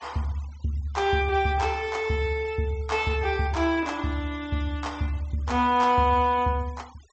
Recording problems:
treble missing; nothing above 8 kHz
denoising artefacts; signal-to-artefact ratio 24 dB

